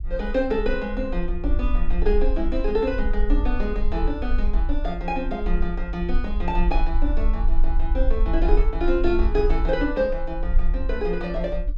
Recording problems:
low-frequency rumble; below 42 Hz, strongest tone 20 Hz, SNR 1 dB

